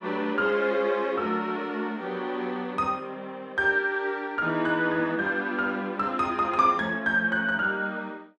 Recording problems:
none

